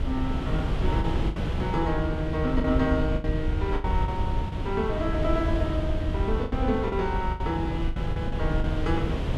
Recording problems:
mains hum; 50 Hz, harmonics up to 450 Hz, SNR 14 dB
low-frequency rumble; below 74 Hz, SNR 4 dB
wind on the microphone; below 240 Hz, SNR 2 dB
packet loss; 9% of the sound replaced, filled with the last packet

